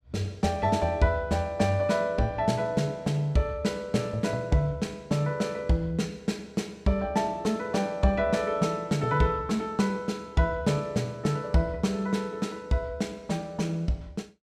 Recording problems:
none

